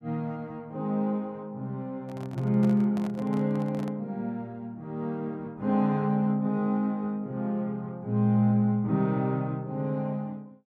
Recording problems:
microphone handling noise; from 2 to 4 s; peak -9 dB vs average level

